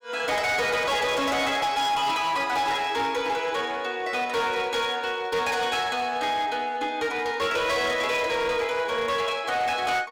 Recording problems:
distorted audio; hard clipping, uneven, signal-to-distortion ratio 11 dB

